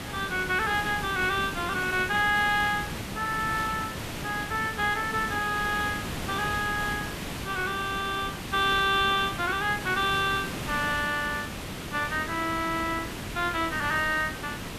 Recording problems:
hiss; slope -4 dB per octave, SNR 7 dB

